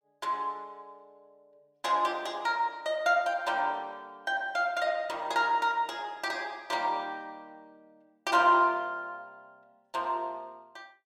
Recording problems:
none

